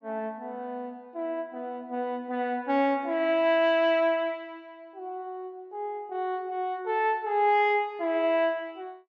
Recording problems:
treble missing; nothing above 8 kHz

